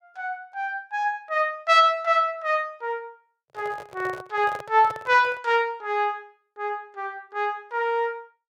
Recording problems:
microphone handling noise; from 3.5 to 5.5 s; peak -10 dB vs average level

